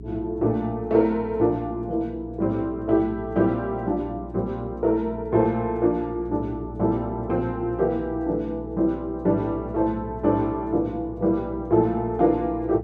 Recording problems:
electrical hum; 60 Hz, harmonics up to 420 Hz, SNR 14 dB

